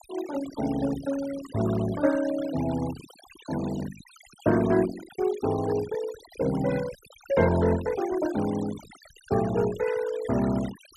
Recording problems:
noise reduction artefacts; signal-to-artefact ratio 14 dB

